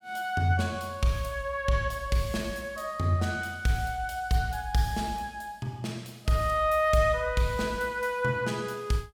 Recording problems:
none

